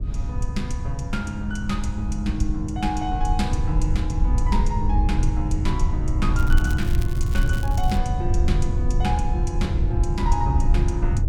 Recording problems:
rumble; below 84 Hz, SNR -4 dB
crackle; from 6.5 to 8 s; loose cable, SNR 14 dB

